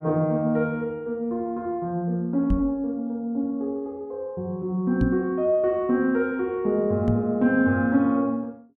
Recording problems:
microphone thump; at 2.5 s, at 5 s and at 7 s; peak +4 dB vs average level

